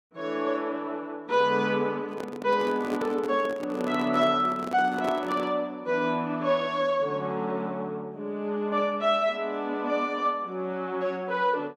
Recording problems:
handling noise; from 2 to 5.5 s; peak -2 dB vs average level

